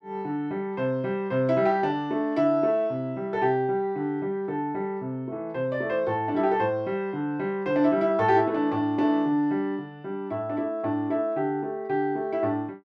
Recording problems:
none

